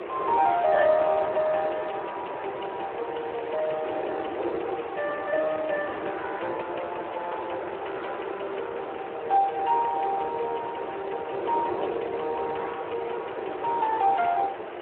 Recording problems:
phone line; 320 Hz to 2.8 kHz, Speex
hiss; SNR 9 dB
wind noise; below 660 Hz, SNR 11 dB

